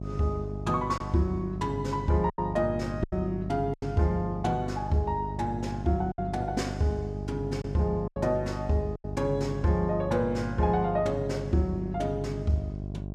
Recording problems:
hum; 50 Hz, harmonics up to 750 Hz, SNR 7 dB
lost packets; 4% of the sound replaced, filled with silence

